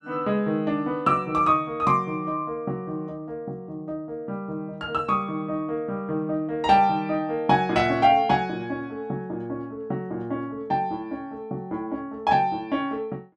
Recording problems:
none

